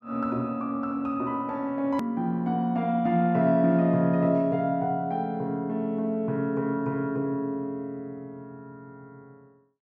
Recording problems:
click at an edit; at 2 s

